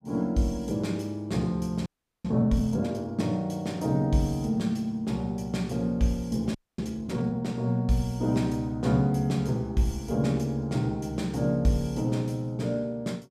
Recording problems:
frozen audio; at 2 s and at 6.5 s

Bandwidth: 15.5 kHz